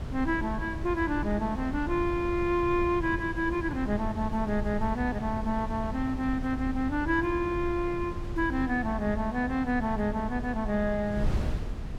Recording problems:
wind on the microphone; below 140 Hz, SNR 7 dB

